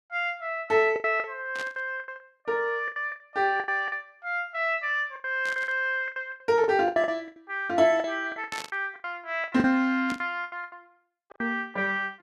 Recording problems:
packet loss; 17% of the sound replaced, filled with the last packet
static burst; 4 times, first at 1.5 s; peak -6 dB vs average level

